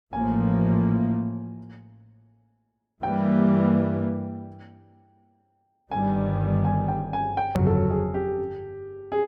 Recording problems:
click at an edit; at 7.5 s

